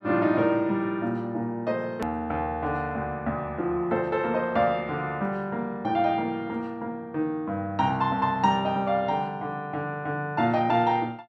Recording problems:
click at an edit; at 2 s

